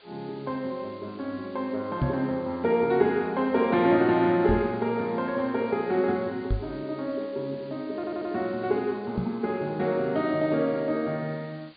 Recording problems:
low-pass filter; nothing above 4.7 kHz
hiss; SNR 27 dB
microphone thump; 4 times, first at 2 s; peak +4 dB vs average level
stutter; at 8 s

